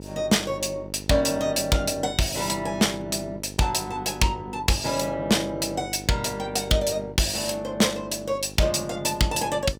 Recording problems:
distortion; hard clipping, signal-to-distortion ratio 11 dB
electrical hum; 50 Hz, harmonics up to 1 kHz, SNR 15 dB

